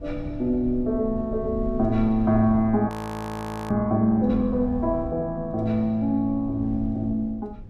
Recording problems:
low-frequency rumble; below 100 Hz, SNR 14 dB
audio freezing; at 3 s for 1 s

